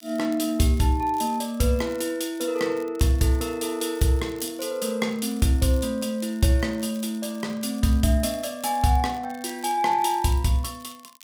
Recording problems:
crackling; vinyl, SNR 25 dB

